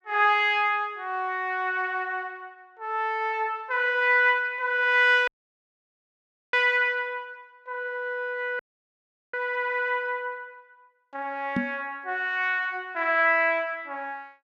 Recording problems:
dropout; at 5.5 s for 1.5 s and at 8.5 s for 0.5 s
microphone thump; at 12 s; peak +1 dB vs average level

